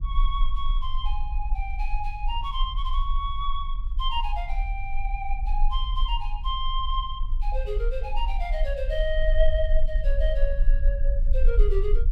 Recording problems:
rumble; below 38 Hz, strongest tone 22 Hz, SNR -3 dB

